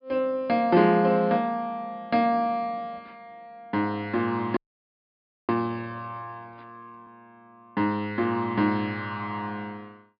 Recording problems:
treble cut off; nothing above 5.5 kHz
audio freezing; at 4.5 s for 1 s

